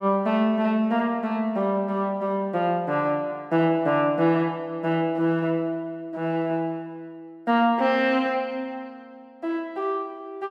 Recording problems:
none

